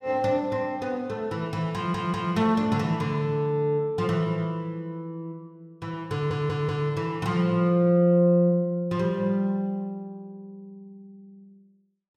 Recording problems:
stutter; at 2 s and at 6 s

